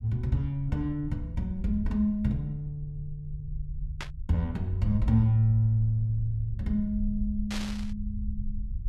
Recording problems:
rumble; below 72 Hz, SNR 10 dB
burst of static; at 4 s and at 7.5 s; peak -4 dB vs average level

